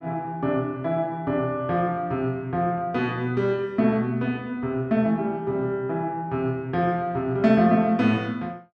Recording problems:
none

